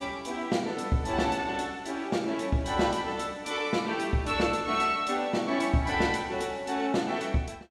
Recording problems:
none

